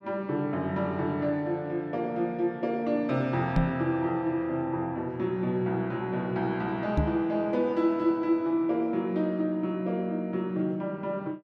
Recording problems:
knock on the microphone; at 3.5 s and at 7 s; peak +7 dB vs average level

